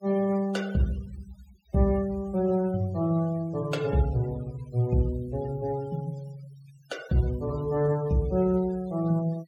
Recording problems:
noise reduction artefacts; signal-to-artefact ratio 23 dB

